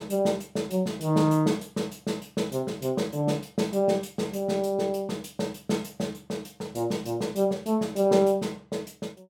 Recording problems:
none

